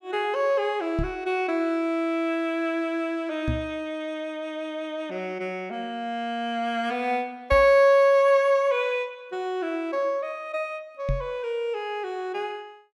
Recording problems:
knock on the microphone; 4 times, first at 1 s; peak +1 dB vs average level

